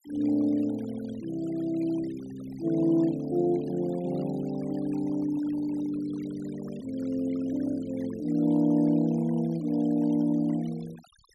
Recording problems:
denoising artefacts; signal-to-artefact ratio 22 dB

